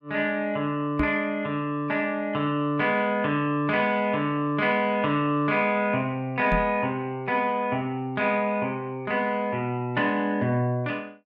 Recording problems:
microphone bump; at 1 s and at 6.5 s; peak +1 dB vs average level

